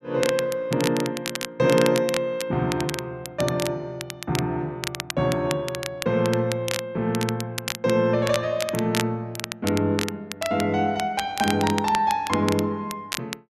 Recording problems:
crackling; vinyl, SNR 8 dB

